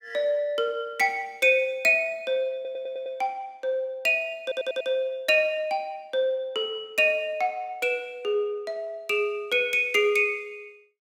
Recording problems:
audio stuttering; at 2.5 s and at 4.5 s

